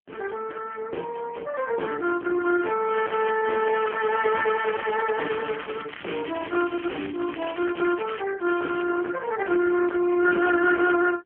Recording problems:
telephone audio; 260 Hz to 3.2 kHz, AMR-NB
distorted audio; hard clipping, signal-to-distortion ratio 11 dB
crackle; from 3 to 6 s, from 6 to 8 s and at 8.5 s; loose cable, SNR 15 dB

